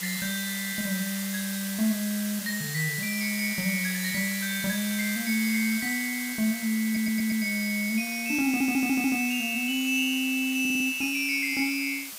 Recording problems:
background hiss; slope +2 dB per octave, SNR 7 dB
audio stuttering; at 7 s, at 8.5 s and at 11 s

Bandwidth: 15.5 kHz